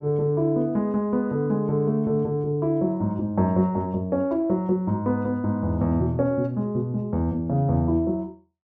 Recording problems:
none

